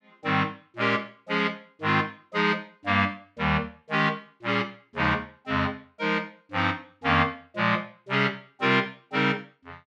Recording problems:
none

